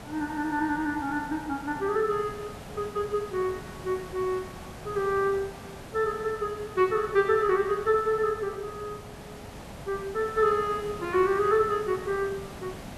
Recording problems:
background hiss; SNR 14 dB

